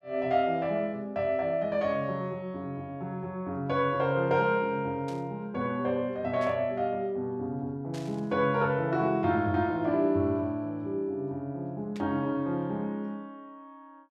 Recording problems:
static burst; 4 times, first at 5 s; peak -12 dB vs average level

